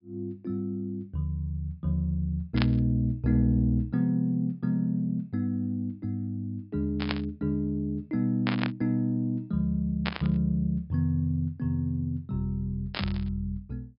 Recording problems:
low-pass filter; nothing above 5.5 kHz
static burst; 5 times, first at 2.5 s; peak +2 dB vs average level

